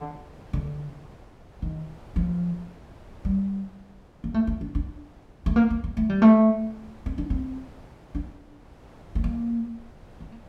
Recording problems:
wind on the microphone; below 620 Hz, SNR 24 dB

